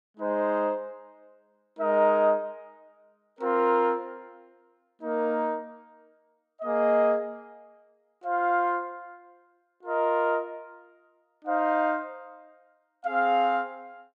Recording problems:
none

